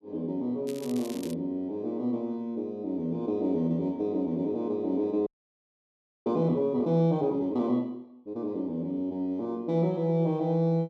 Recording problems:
crackle; at 0.5 s; loose cable, SNR 18 dB
audio freezing; at 5.5 s for 1 s

